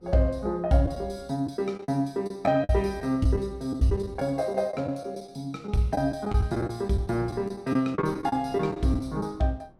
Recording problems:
wind on the microphone; below 400 Hz, SNR 22 dB
lost packets; 8% of the sound replaced, filled with the last packet

